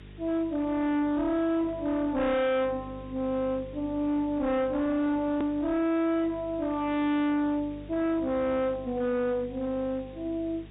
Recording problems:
low-pass filter; nothing above 4 kHz
distortion; hard clipping, uneven, signal-to-distortion ratio 7 dB
electrical hum; 50 Hz, harmonics up to 450 Hz, SNR 19 dB
background hiss; SNR 27 dB
edit click; at 5.5 s

